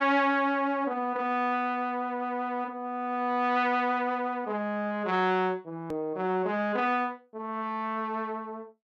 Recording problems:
hard cut with a click; at 6 s

